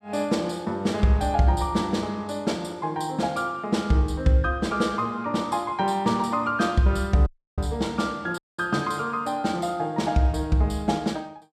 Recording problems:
dropout; at 7.5 s and at 8.5 s

